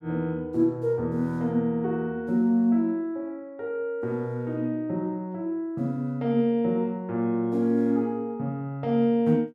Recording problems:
none

